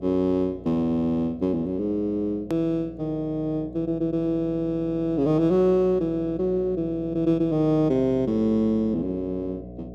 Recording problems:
hum; 60 Hz, harmonics up to 720 Hz, SNR 17 dB
edit click; at 2.5 s

